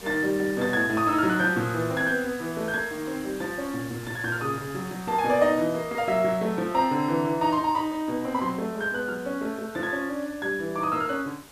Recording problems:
hiss; slope -2 dB per octave, SNR 18 dB

